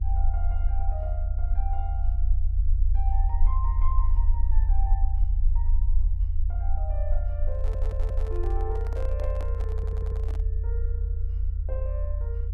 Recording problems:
low-frequency rumble; below 48 Hz, SNR -13 dB
microphone handling noise; from 7.5 to 10 s; peak +1 dB vs average level
stutter; at 7.5 s and at 9.5 s

